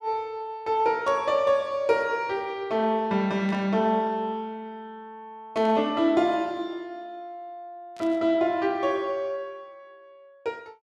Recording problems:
burst of static; 4 times, first at 1 s; peak -14 dB vs average level

